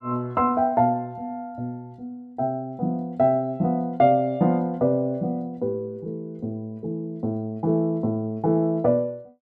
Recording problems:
none

